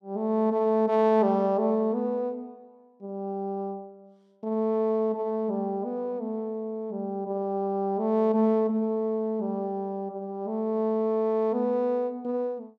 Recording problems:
none

